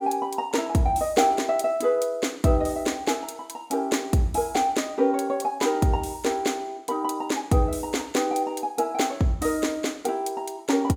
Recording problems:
none

